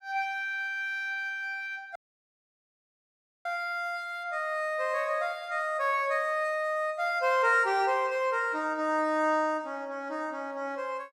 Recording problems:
audio cutting out; at 2 s for 1.5 s

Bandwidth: 15.5 kHz